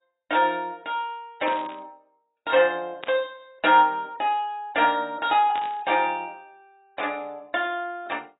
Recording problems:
lossy compression; AAC, log-spectral distance 3 dB, nothing above 3.3 kHz
static burst; at 1.5 s, at 3 s and at 5.5 s; peak -7 dB vs average level

